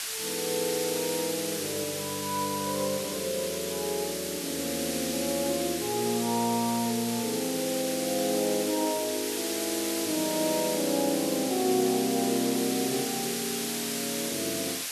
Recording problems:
background hiss; slope +3 dB per octave, SNR 2 dB

